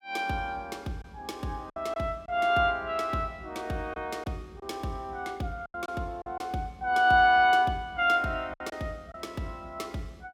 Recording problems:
packet loss; 4% of the sound replaced, filled with silence

